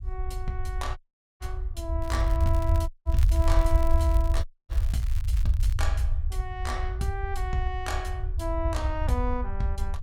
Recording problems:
low-frequency rumble; below 76 Hz, SNR -5 dB
dropout; at 1 s, at 3 s and at 4.5 s
crackling; from 2 to 5.5 s; loose cable, SNR 15 dB

